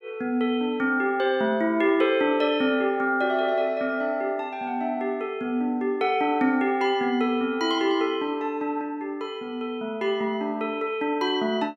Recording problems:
none

